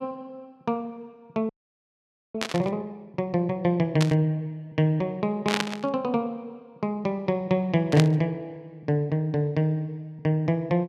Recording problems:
audio freezing; at 1.5 s for 1 s
static burst; 4 times, first at 2.5 s; peak +5 dB vs average level

